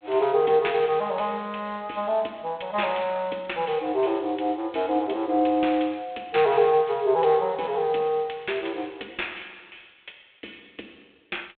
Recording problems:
telephone audio; 320 Hz to 3.6 kHz, G.726

